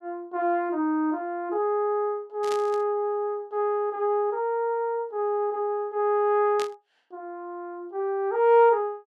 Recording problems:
burst of static; at 2.5 s and at 6.5 s; peak -7 dB vs average level

